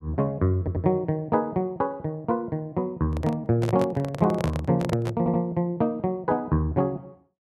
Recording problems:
audio stuttering; at 0.5 s and at 5 s
handling noise; from 3 to 5 s; peak 0 dB vs average level

